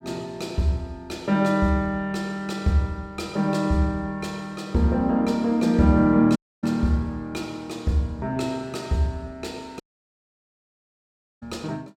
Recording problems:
audio cutting out; at 6.5 s and at 10 s for 1.5 s

